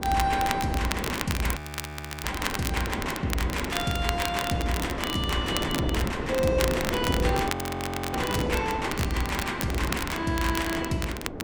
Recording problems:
wind on the microphone; below 510 Hz, SNR 5 dB
crackling; vinyl, SNR 6 dB
frozen audio; at 1.5 s for 0.5 s and at 7.5 s for 0.5 s

